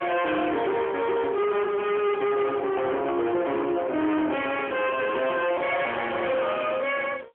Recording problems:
telephone audio; 280 Hz to 3.3 kHz, AMR-NB
distortion; hard clipping, uneven, signal-to-distortion ratio 7 dB
microphone handling noise; from 3 to 6.5 s; peak -6 dB vs average level

